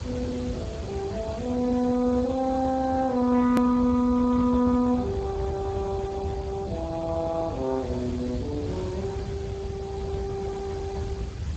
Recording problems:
lossy compression; Speex, log-spectral distance 3 dB, nothing above 13.1 kHz
background hiss; slope -4 dB per octave, SNR 17 dB
low-frequency rumble; below 130 Hz, SNR 10 dB
hard cut with a click; at 3.5 s

